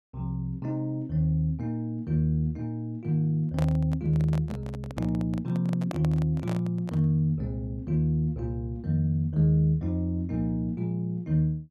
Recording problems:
microphone handling noise; from 3.5 to 7 s; peak -3 dB vs average level

